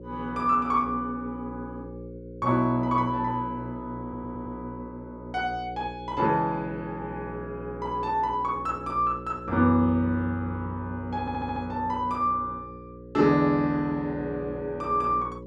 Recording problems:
hum; 60 Hz, harmonics up to 540 Hz, SNR 13 dB
audio stuttering; at 4 s and at 11 s

